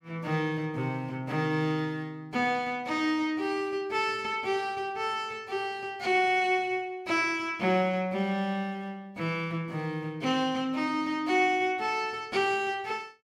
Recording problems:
none

